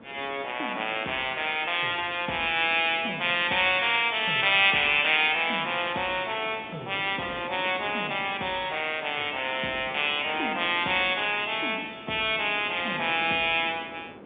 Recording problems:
phone line; 170 Hz to 3.6 kHz, G.711
wind on the microphone; below 710 Hz, SNR 20 dB

